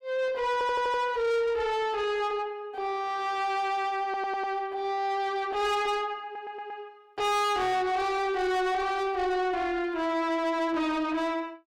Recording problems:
distortion; soft clipping, signal-to-distortion ratio 7 dB
stutter; at 0.5 s, at 4 s and at 6 s

